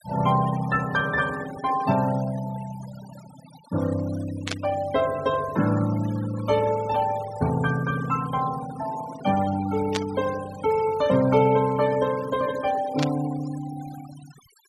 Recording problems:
denoising artefacts; signal-to-artefact ratio 16 dB
static burst; at 4.5 s, at 10 s and at 13 s; peak 0 dB vs average level

